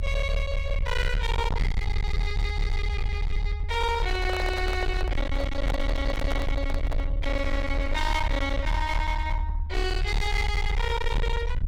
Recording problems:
distorted audio; hard clipping, uneven, signal-to-distortion ratio 7 dB
low-frequency rumble; below 74 Hz, SNR 0 dB
handling noise; from 4 to 7 s; peak -1 dB vs average level

